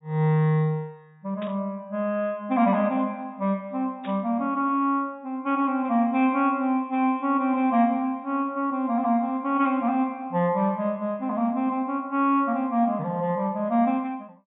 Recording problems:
treble missing; nothing above 4 kHz
burst of static; at 1.5 s and at 4 s; peak -13 dB vs average level

